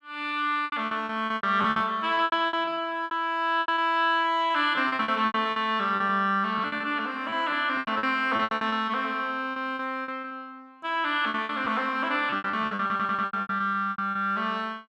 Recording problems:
lost packets; 18% of the sound replaced, filled with repeated pitch periods
audio stuttering; at 13 s

